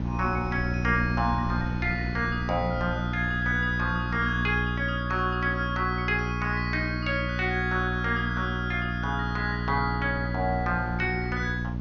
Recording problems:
treble cut off; nothing above 6.6 kHz
hum; 60 Hz, harmonics up to 540 Hz, SNR 3 dB
wind on the microphone; below 340 Hz, SNR 17 dB

